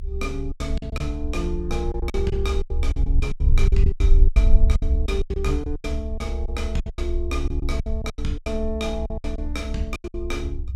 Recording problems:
low-frequency rumble; below 66 Hz, strongest tone 24 Hz, SNR -5 dB
lost packets; 16% of the sound replaced, filled with silence

